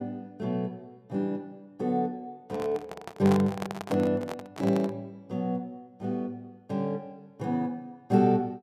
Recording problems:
handling noise; from 2.5 to 5 s; peak +1 dB vs average level

